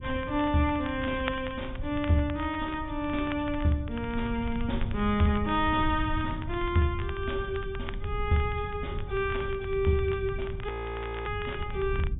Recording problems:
low-pass filter; nothing above 3.6 kHz
rumble; below 100 Hz, SNR 8 dB
crackle; vinyl, SNR 17 dB
audio freezing; at 11 s for 0.5 s

